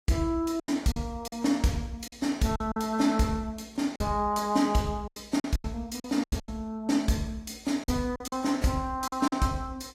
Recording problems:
lossy codec; AAC, log-spectral distance 3 dB, nothing above 14.7 kHz
packet loss; 9% of the sound replaced, filled with silence

